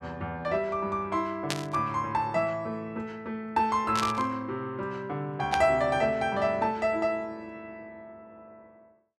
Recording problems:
static burst; at 1.5 s, at 4 s and at 5.5 s; peak +3 dB vs average level

